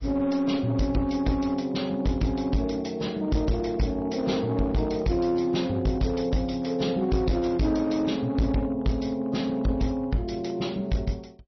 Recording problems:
codec artefacts; MP3, log-spectral distance 3 dB, nothing above 5.8 kHz
distorted audio; hard clipping, uneven, signal-to-distortion ratio 10 dB

